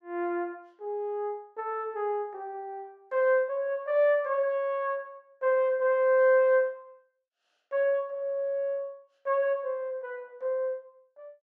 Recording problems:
none

